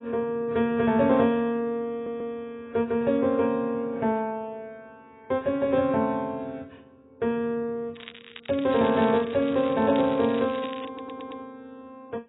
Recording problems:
lossy codec; AAC, log-spectral distance 4 dB, nothing above 3.2 kHz
audio stuttering; at 2 s and at 11 s
crackling; from 8 to 11 s; loose cable, SNR 18 dB

